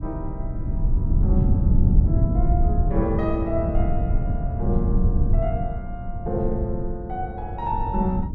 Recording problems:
low-frequency rumble; below 110 Hz, SNR -5 dB

